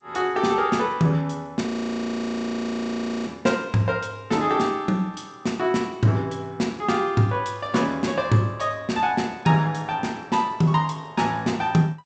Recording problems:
lossy codec; G.722, log-spectral distance 2 dB, nothing above 8 kHz
audio freezing; at 1.5 s for 1.5 s

